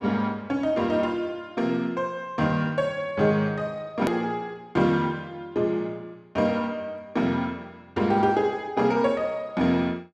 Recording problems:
click at an edit; at 4 s

